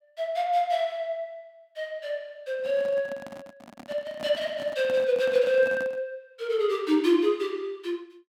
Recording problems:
microphone handling noise; from 2.5 to 6 s; peak -9 dB vs average level

